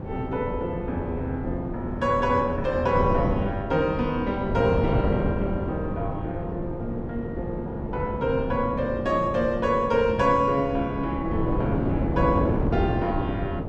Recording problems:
wind on the microphone; below 380 Hz, SNR 3 dB

